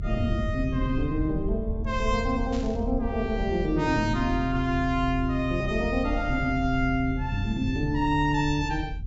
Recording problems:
treble cut off; nothing above 8 kHz
rumble; below 80 Hz, strongest tone 42 Hz, SNR 7 dB
burst of static; at 2.5 s; peak -12 dB vs average level

